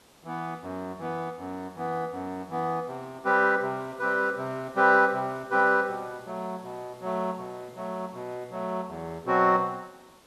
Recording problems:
hiss; slope -4 dB per octave, SNR 26 dB

